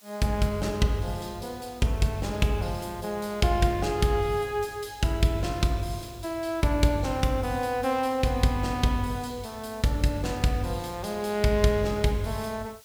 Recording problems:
background hiss; slope +1 dB per octave, SNR 24 dB

